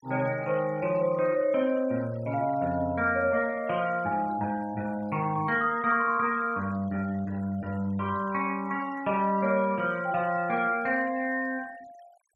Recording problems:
denoising artefacts; signal-to-artefact ratio 24 dB

